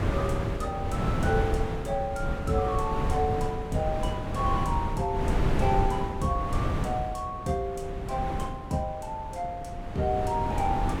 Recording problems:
wind on the microphone; below 300 Hz, SNR 1 dB

